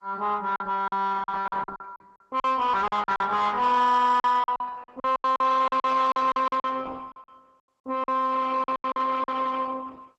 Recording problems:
lossy codec; Opus, log-spectral distance 4 dB
distorted audio; soft clipping, signal-to-distortion ratio 7 dB
packet loss; 14% of the sound replaced, filled with silence

